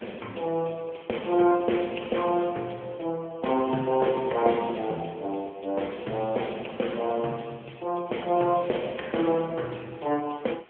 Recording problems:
telephone audio; 170 Hz to 3.3 kHz, AMR-NB
background hiss; SNR 27 dB

